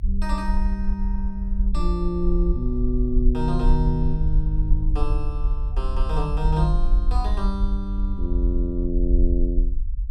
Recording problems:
rumble; below 48 Hz, SNR -3 dB

